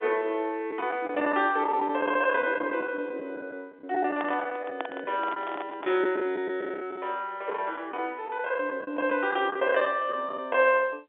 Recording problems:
phone line; 300 Hz to 3.6 kHz, G.711
packet loss; 10% of the sound replaced, filled with the last packet
handling noise; from 4 to 6 s; peak -1 dB vs average level

